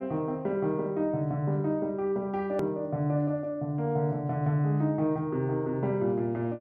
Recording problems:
edit click; at 2.5 s

